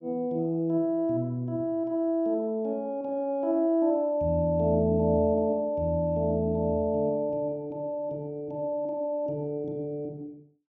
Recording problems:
none

